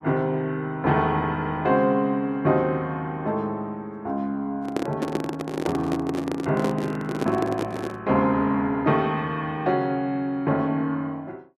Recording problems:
microphone handling noise; from 4.5 to 8 s; peak +3 dB vs average level

